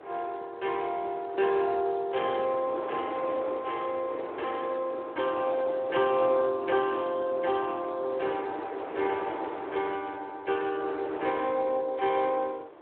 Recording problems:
phone line; 280 Hz to 3.4 kHz, Speex
wind noise; below 890 Hz, SNR 11 dB

